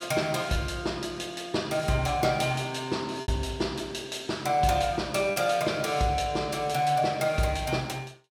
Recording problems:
packet loss; 1.6% of the sound replaced, filled with repeated pitch periods

